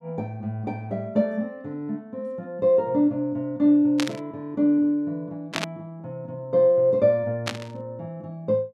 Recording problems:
static burst; at 4 s, at 5.5 s and at 7.5 s; peak +1 dB vs average level

